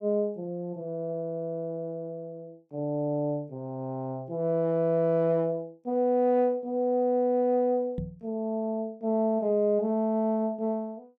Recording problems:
microphone thump; at 8 s; peak -1 dB vs average level

